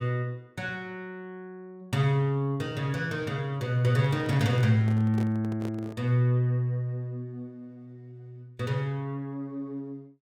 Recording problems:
microphone handling noise; from 4 to 6 s; peak -7 dB vs average level

